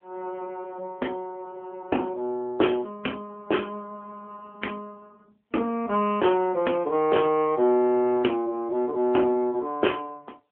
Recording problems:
telephone audio; 220 Hz to 3.3 kHz, AMR-NB

